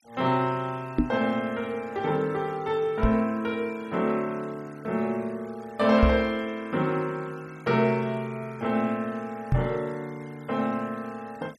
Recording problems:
noise reduction artefacts; signal-to-artefact ratio 26 dB
knock on the microphone; 4 times, first at 1 s; peak +8 dB vs average level

